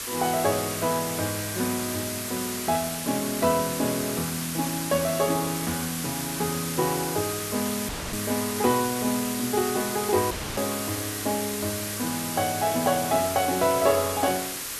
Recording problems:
background hiss; slope 0 dB per octave, SNR 4 dB
audio cutting out; at 8 s and at 10 s

